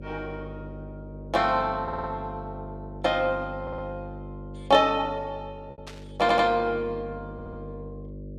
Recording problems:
hum; 50 Hz, harmonics up to 600 Hz, SNR 14 dB
lost packets; 1.1% of the sound replaced, filled with repeated pitch periods
stutter; 4 times, first at 2 s
static burst; at 6 s; peak -12 dB vs average level

